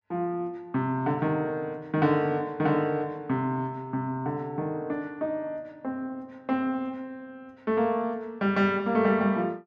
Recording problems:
none

